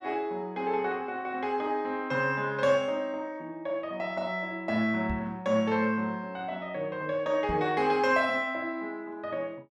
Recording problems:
microphone bump; at 5 s and at 7.5 s; peak -3 dB vs average level

